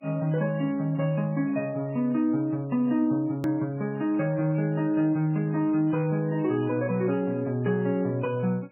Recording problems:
codec artefacts; MP3, log-spectral distance 2 dB, nothing above 2.5 kHz
hard cut with a click; at 3.5 s

